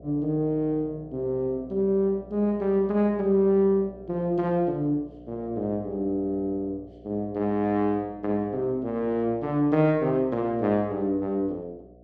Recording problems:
hum; 60 Hz, harmonics up to 720 Hz, SNR 22 dB

